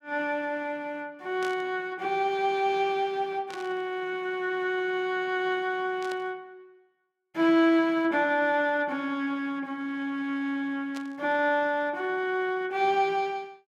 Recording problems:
burst of static; 4 times, first at 1.5 s; peak -9 dB vs average level

